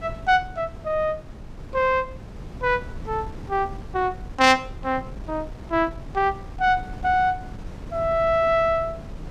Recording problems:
wind on the microphone; below 200 Hz, SNR 15 dB

